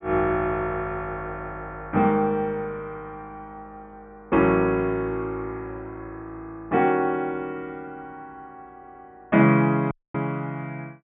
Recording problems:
treble cut off; nothing above 3.6 kHz
audio stuttering; at 8.5 s
dropout; at 10 s

